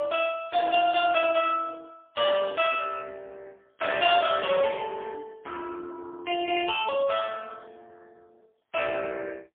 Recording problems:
phone line; 280 Hz to 3.3 kHz, AMR-NB, then MP3

